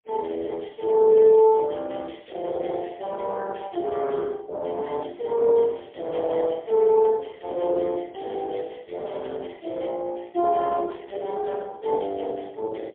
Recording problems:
telephone audio; 320 Hz to 2 kHz, AMR-NB, then MP3

